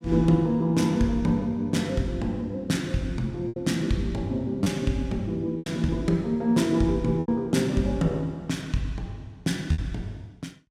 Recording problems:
packet loss; 3% of the sound replaced, filled with repeated pitch periods

